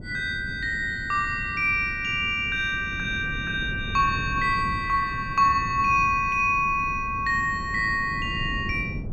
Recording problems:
wind noise; below 210 Hz, SNR 12 dB

